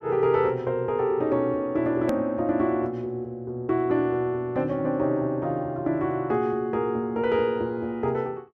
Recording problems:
click at an edit; at 2 s

